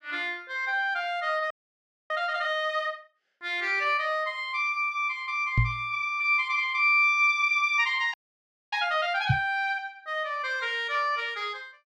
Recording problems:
audio freezing; at 1.5 s for 0.5 s and at 8 s for 0.5 s
microphone bump; at 5.5 s and at 9.5 s; peak +6 dB vs average level

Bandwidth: 13 kHz